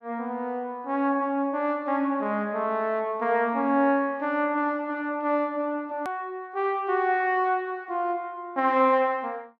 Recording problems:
click at an edit; at 6 s

